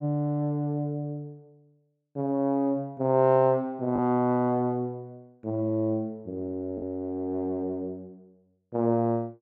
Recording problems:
lost packets; 0.8% of the sound replaced, filled with the last packet

